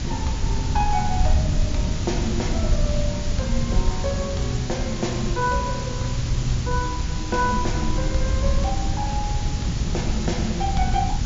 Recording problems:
treble missing; nothing above 7.3 kHz
hum; 60 Hz, harmonics up to 600 Hz, SNR 15 dB
hiss; slope 0 dB per octave, SNR 7 dB
low-frequency rumble; below 84 Hz, SNR 1 dB
wind on the microphone; below 190 Hz, SNR 5 dB

